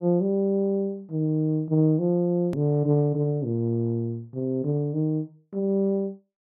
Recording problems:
click at an edit; at 2.5 s

